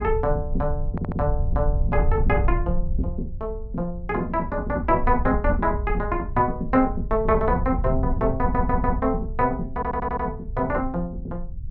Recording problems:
rumble; below 70 Hz, SNR 5 dB
audio stuttering; at 1 s, at 8.5 s and at 9.5 s

